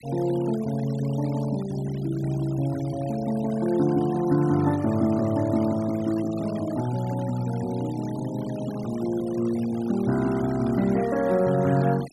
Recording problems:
denoising artefacts; signal-to-artefact ratio 19 dB

